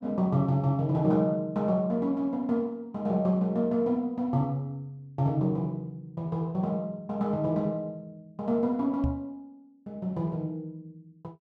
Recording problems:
microphone thump; at 9 s; peak +2 dB vs average level

